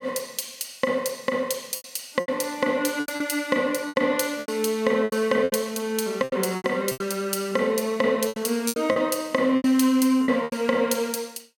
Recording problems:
packet loss; 11% of the sound replaced, filled with repeated pitch periods

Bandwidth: 17 kHz